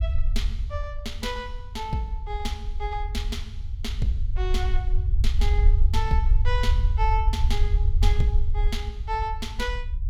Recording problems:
rumble; below 64 Hz, SNR -5 dB

